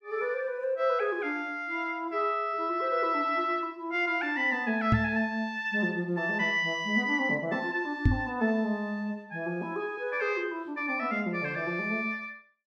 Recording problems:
microphone bump; at 5 s and at 8 s; peak +9 dB vs average level

